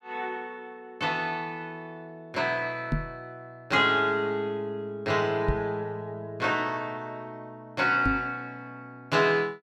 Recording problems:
microphone bump; at 3 s, at 5.5 s and at 8 s; peak +4 dB vs average level

